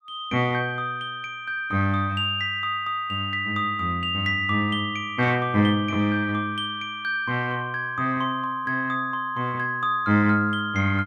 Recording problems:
none

